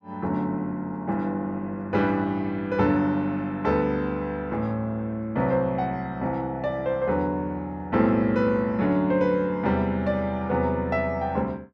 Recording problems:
none

